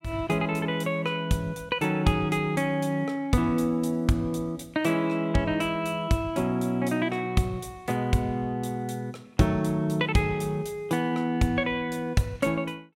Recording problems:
none

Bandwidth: 16.5 kHz